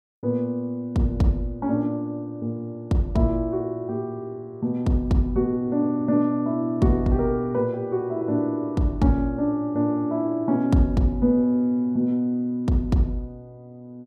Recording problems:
none

